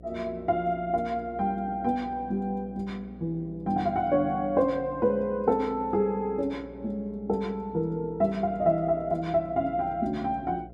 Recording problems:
mains hum; 60 Hz, harmonics up to 720 Hz, SNR 21 dB

